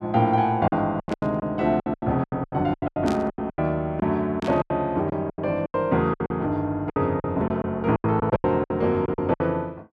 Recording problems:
lost packets; 18% of the sound replaced, filled with silence
burst of static; at 1 s, at 3 s and at 4.5 s; peak -8 dB vs average level

